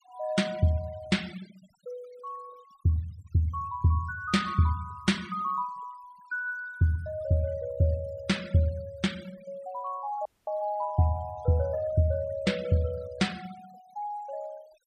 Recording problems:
denoising artefacts; signal-to-artefact ratio 22 dB
dropout; at 10 s

